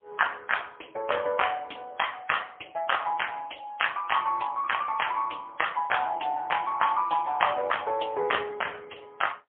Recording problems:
telephone audio; 370 Hz to 3.3 kHz, AMR-NB, then MP3

